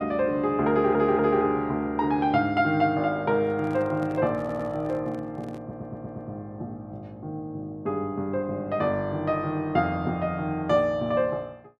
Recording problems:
stutter; at 0.5 s, at 4.5 s and at 5.5 s
handling noise; from 3.5 to 6 s; peak -12 dB vs average level

